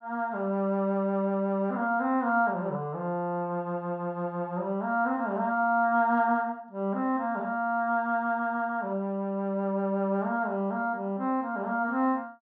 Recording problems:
none

